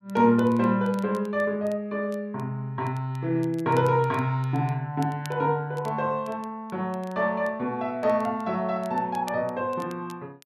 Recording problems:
crackling; vinyl, SNR 26 dB

